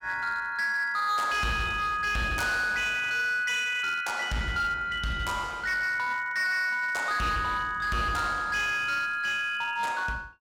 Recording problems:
distorted audio; hard clipping, signal-to-distortion ratio 12 dB

